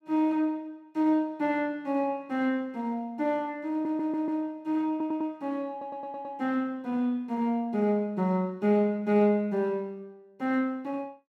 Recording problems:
stutter; at 3.5 s, at 5 s and at 5.5 s

